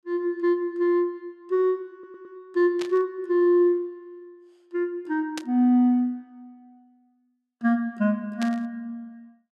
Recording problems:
audio stuttering; at 2 s
static burst; at 3 s, at 5.5 s and at 8.5 s; peak -6 dB vs average level

